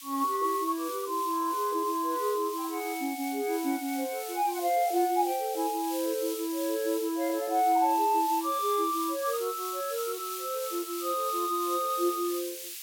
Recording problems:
hiss; SNR 10 dB

